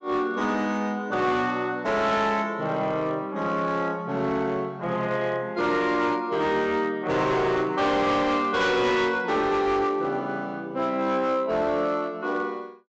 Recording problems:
treble missing; nothing above 8 kHz
distortion; hard clipping, signal-to-distortion ratio 11 dB

